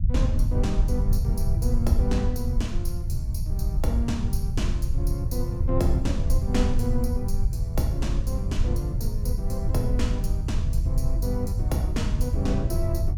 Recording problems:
rumble; below 88 Hz, SNR -4 dB

